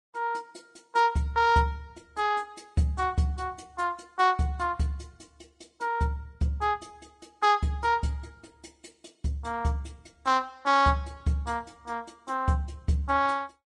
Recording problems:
codec artefacts; Vorbis, log-spectral distance 2 dB, nothing above 10.1 kHz

